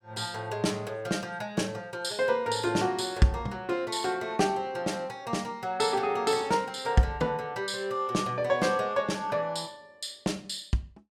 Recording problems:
none

